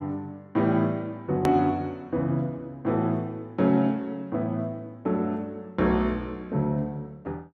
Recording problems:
hard cut with a click; at 1.5 s

